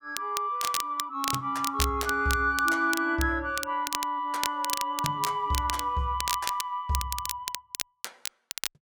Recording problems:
crackle; vinyl, SNR 6 dB

